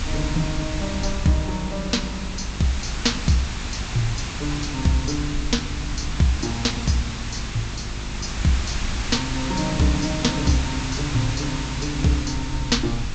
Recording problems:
low-pass filter; nothing above 8 kHz
electrical hum; 50 Hz, harmonics up to 600 Hz, SNR 15 dB
hiss; slope -1 dB per octave, SNR 6 dB
low-frequency rumble; below 58 Hz, SNR 9 dB

